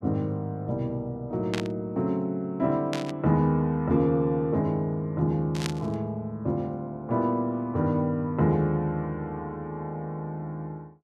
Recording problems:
burst of static; at 1.5 s, at 3 s and at 5.5 s; peak 0 dB vs average level

